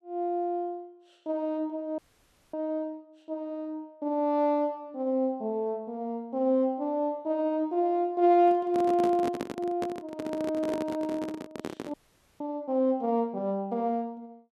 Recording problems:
frozen audio; at 2 s for 0.5 s and at 12 s
handling noise; from 8.5 to 12 s; peak -1 dB vs average level

